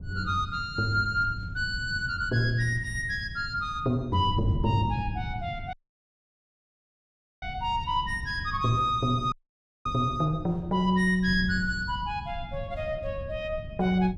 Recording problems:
wind noise; below 140 Hz, SNR 10 dB
audio cutting out; at 5.5 s for 1.5 s and at 9.5 s for 0.5 s

